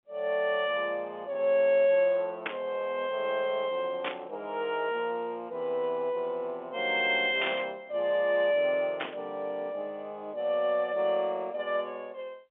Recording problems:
telephone audio; 170 Hz to 3.5 kHz, G.711
burst of static; 4 times, first at 2.5 s; peak +1 dB vs average level

